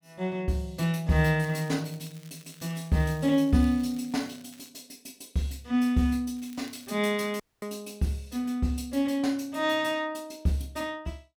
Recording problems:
crackling; from 1.5 to 4.5 s and at 6.5 s; loose cable, SNR 25 dB
dropout; at 7.5 s

